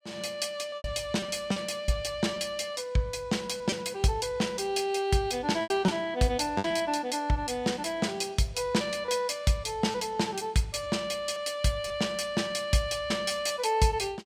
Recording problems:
lost packets; 5% of the sound replaced, filled with repeated pitch periods

